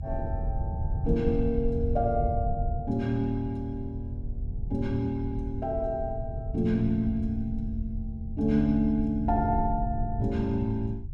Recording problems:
rumble; below 96 Hz, SNR 5 dB

